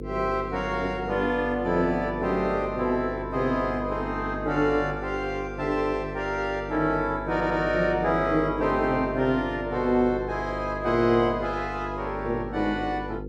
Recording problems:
electrical hum; 50 Hz, harmonics up to 500 Hz, SNR 10 dB
audio stuttering; at 7.5 s

